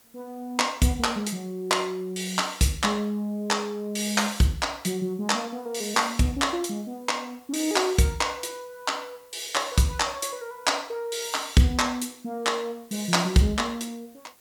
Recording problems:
background hiss; slope -2 dB per octave, SNR 29 dB

